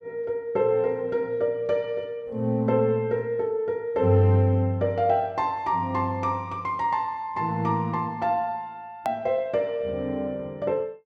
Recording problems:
edit click; at 9 s

